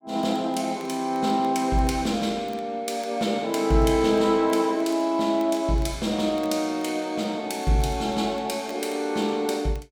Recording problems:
crackling; vinyl, SNR 30 dB

